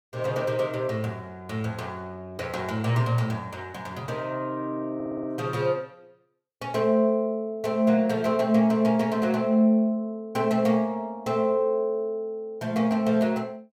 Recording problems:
audio stuttering; at 5 s

